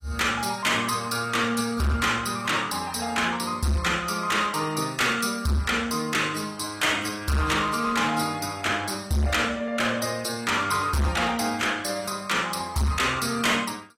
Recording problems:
lossy codec; AAC, log-spectral distance 5 dB, nothing above 14.3 kHz
distorted audio; hard clipping, signal-to-distortion ratio 7 dB

